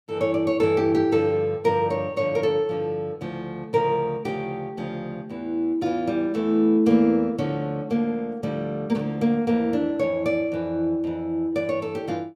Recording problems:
none

